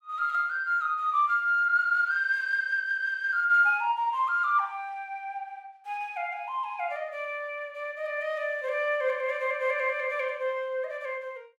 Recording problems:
none

